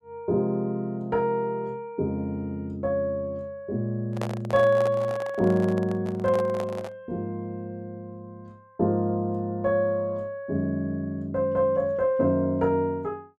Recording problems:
handling noise; from 4 to 7 s; peak -2 dB vs average level

